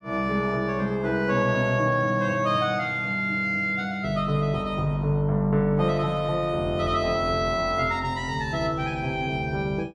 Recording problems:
none

